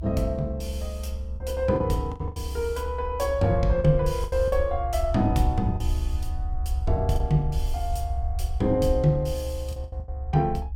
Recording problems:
low-frequency rumble; below 70 Hz, SNR 5 dB
lost packets; 6% of the sound replaced, filled with the last packet

